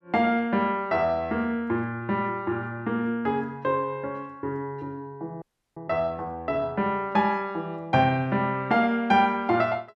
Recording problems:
frozen audio; at 5.5 s

